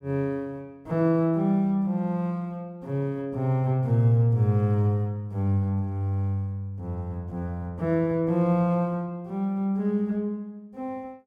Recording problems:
none

